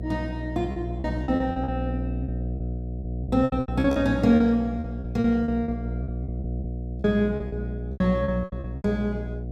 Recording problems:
hum; 60 Hz, harmonics up to 720 Hz, SNR 6 dB
lost packets; 16% of the sound replaced, filled with repeated pitch periods

